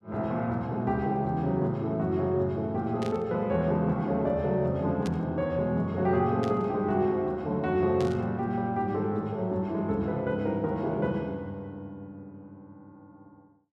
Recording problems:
static burst; 4 times, first at 3 s; peak -9 dB vs average level

